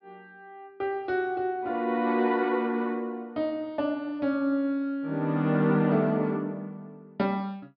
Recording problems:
treble missing; nothing above 5.5 kHz

